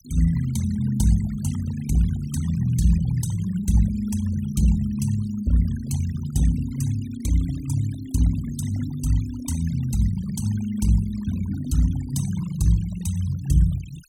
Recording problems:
denoising artefacts; signal-to-artefact ratio 18 dB

